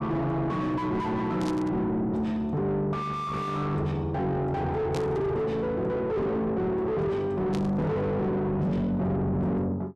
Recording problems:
distorted audio; soft clipping, signal-to-distortion ratio 6 dB
burst of static; at 1.5 s, at 5 s and at 7.5 s; peak -8 dB vs average level

